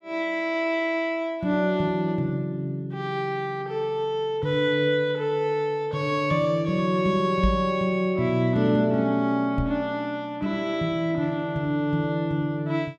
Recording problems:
knock on the microphone; at 7.5 s and at 9.5 s; peak +2 dB vs average level

